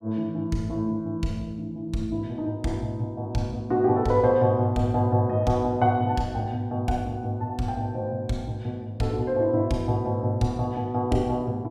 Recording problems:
none

